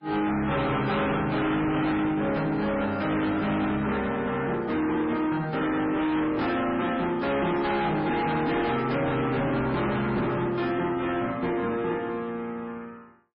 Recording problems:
lossy codec; MP3, log-spectral distance 3 dB
distorted audio; soft clipping, signal-to-distortion ratio 7 dB

